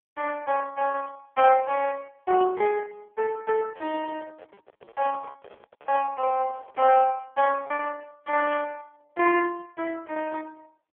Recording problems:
phone line; 320 Hz to 2.8 kHz, AMR-NB
packet loss; 16% of the sound replaced, filled with repeated pitch periods
microphone handling noise; from 4 to 7 s; peak -14 dB vs average level

